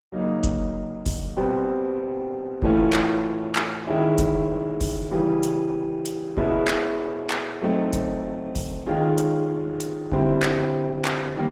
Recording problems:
codec artefacts; Opus, log-spectral distance 3 dB

